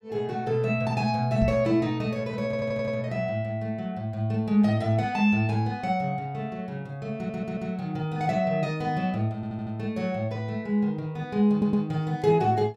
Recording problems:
knock on the microphone; at 1.5 s; peak +2 dB vs average level
audio stuttering; 4 times, first at 2.5 s

